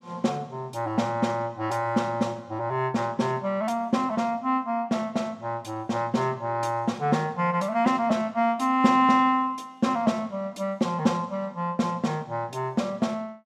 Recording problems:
none

